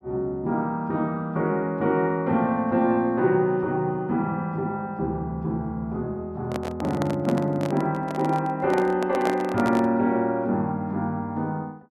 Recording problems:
handling noise; from 6.5 to 10 s; peak 0 dB vs average level

